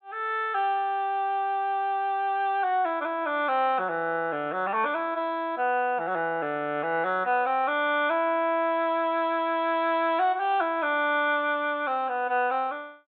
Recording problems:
treble missing; nothing above 4 kHz

